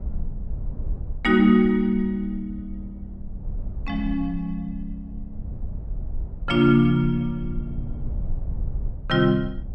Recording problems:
rumble; below 70 Hz, SNR 13 dB

